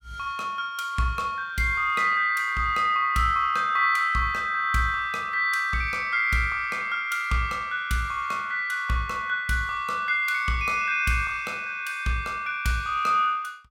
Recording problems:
none

